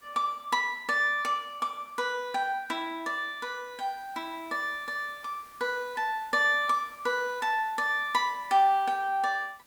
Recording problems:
hiss; SNR 27 dB

